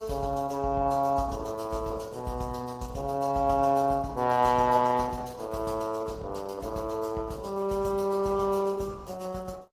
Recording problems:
lossy codec; Opus, then AAC, log-spectral distance 3 dB, nothing above 15.1 kHz

